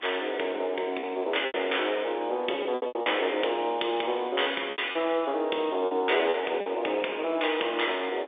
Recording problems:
phone line; 240 Hz to 3.6 kHz, G.711
wind noise; below 1.4 kHz, SNR 23 dB
packet loss; 8% of the sound replaced, filled with repeated pitch periods

